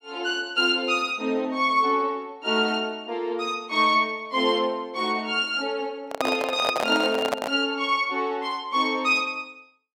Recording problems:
handling noise; from 6 to 7.5 s; peak +3 dB vs average level

